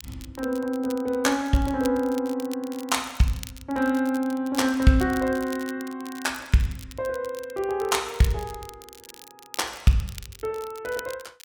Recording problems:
crackling; vinyl, SNR 18 dB

